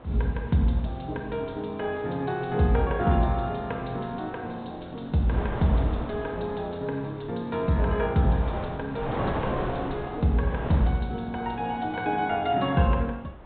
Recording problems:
treble missing; nothing above 4 kHz
wind noise; below 900 Hz, SNR 10 dB

